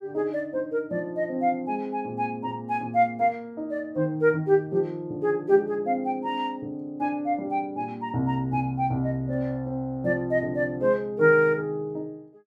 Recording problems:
none

